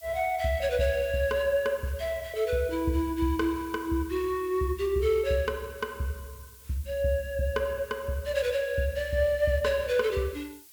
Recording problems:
hiss; SNR 21 dB

